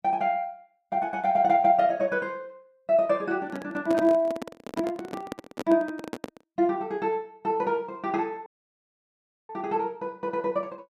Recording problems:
microphone handling noise; from 3.5 to 6.5 s; peak -1 dB vs average level
audio cutting out; at 8.5 s for 1 s

